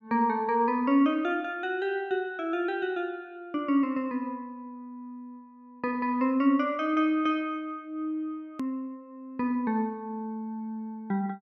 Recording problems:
click at an edit; at 8.5 s

